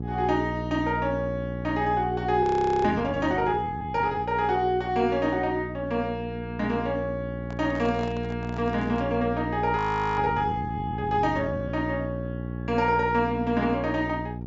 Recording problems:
treble cut off; nothing above 8 kHz
hum; 60 Hz, harmonics up to 480 Hz, SNR 8 dB
frozen audio; at 2.5 s and at 10 s
microphone handling noise; from 7.5 to 9 s; peak -8 dB vs average level

